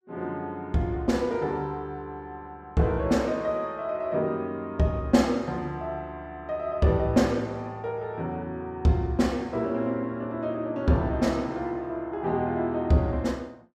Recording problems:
none

